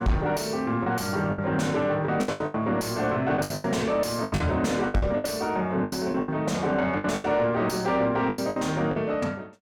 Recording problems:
distorted audio; soft clipping, signal-to-distortion ratio 10 dB
lost packets; 13% of the sound replaced, filled with the last packet

